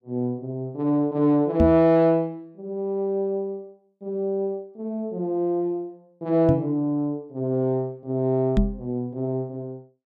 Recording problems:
microphone bump; at 1.5 s, at 6.5 s and at 8.5 s; peak +6 dB vs average level

